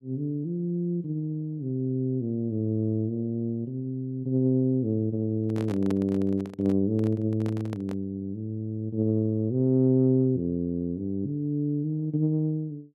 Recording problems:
handling noise; from 5.5 to 8 s; peak -4 dB vs average level

